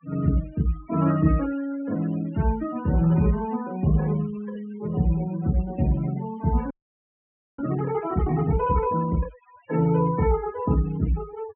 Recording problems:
treble missing; nothing above 3 kHz
noise reduction artefacts; signal-to-artefact ratio 18 dB
frozen audio; at 6.5 s for 1 s

